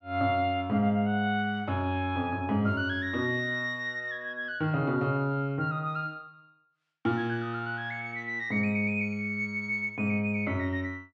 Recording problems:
none

